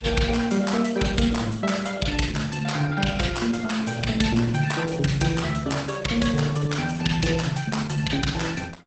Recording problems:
lossy compression; Opus, log-spectral distance 5 dB, nothing above 8 kHz

